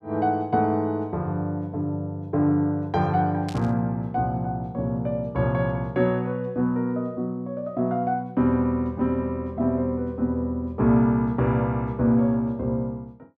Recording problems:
static burst; at 3.5 s; peak -10 dB vs average level

